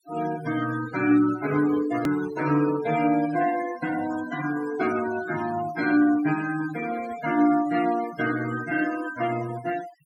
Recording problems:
denoising artefacts; signal-to-artefact ratio 13 dB
hard cut with a click; at 2 s

